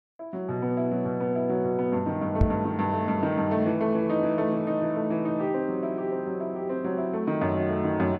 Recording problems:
knock on the microphone; at 2.5 s; peak +8 dB vs average level

